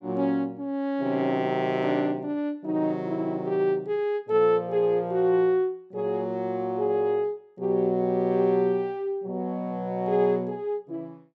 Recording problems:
none

